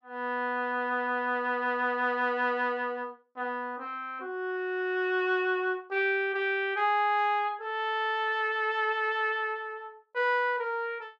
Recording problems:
none

